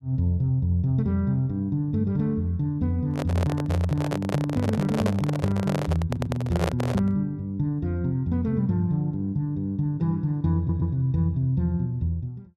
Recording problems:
microphone handling noise; from 3 to 7 s; peak +2 dB vs average level
audio stuttering; at 6 s and at 11 s

